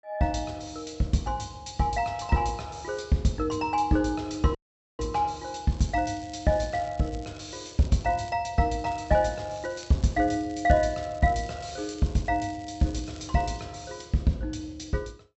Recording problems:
treble missing; nothing above 7.8 kHz
dropout; at 4.5 s
crackling; from 5.5 to 8.5 s and from 9 to 14 s; loose cable, SNR 23 dB

